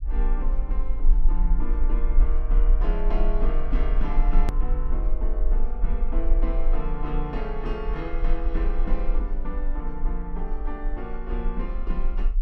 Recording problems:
low-frequency rumble; below 36 Hz, strongest tone 24 Hz, SNR -7 dB
hard cut with a click; at 4.5 s

